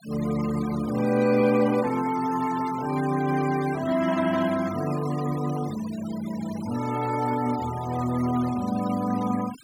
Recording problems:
noise reduction artefacts; signal-to-artefact ratio 17 dB

